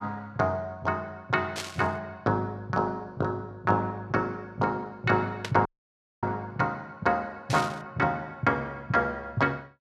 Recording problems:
burst of static; at 1.5 s, at 5.5 s and at 7.5 s; peak -1 dB vs average level
audio cutting out; at 5.5 s for 0.5 s

